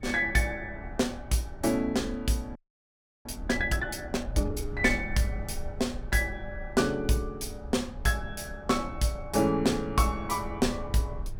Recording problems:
low-frequency rumble; below 84 Hz, SNR 13 dB
frozen audio; at 2.5 s for 0.5 s

